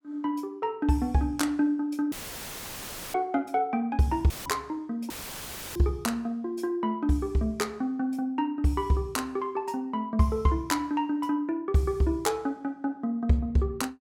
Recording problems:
audio cutting out; at 2 s for 1 s, at 4.5 s and at 5 s for 0.5 s; filled with static

